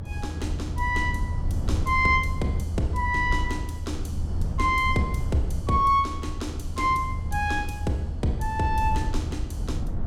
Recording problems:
rumble; below 92 Hz, SNR 4 dB

